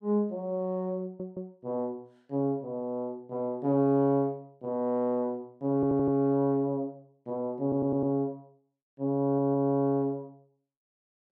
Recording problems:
stutter; 4 times, first at 1 s

